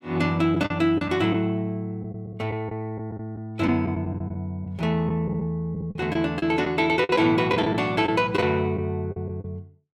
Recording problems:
packet loss; 8% of the sound replaced, filled with the last packet

